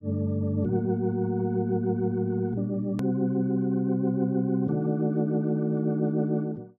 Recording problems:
edit click; at 3 s

